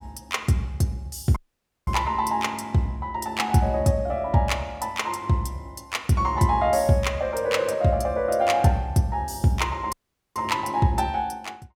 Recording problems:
dropout; at 1.5 s for 0.5 s and at 10 s

